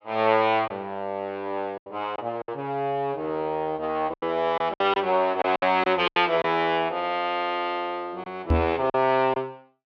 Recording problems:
lost packets; 7% of the sound replaced, filled with silence
microphone bump; at 8.5 s; peak +6 dB vs average level

